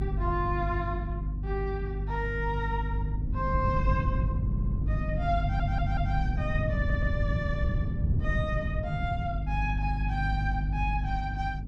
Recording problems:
hum; 50 Hz, harmonics up to 300 Hz, SNR -1 dB
wind noise; below 140 Hz, SNR 0 dB
stutter; at 4.5 s, at 5.5 s and at 7 s

